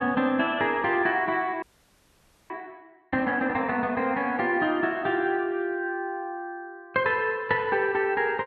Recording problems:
frozen audio; at 1.5 s for 1 s

